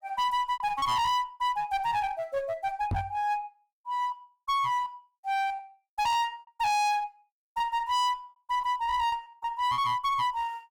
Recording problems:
distortion; hard clipping, uneven, signal-to-distortion ratio 6 dB
packet loss; 5% of the sound replaced, filled with repeated pitch periods
microphone thump; at 3 s; peak +1 dB vs average level

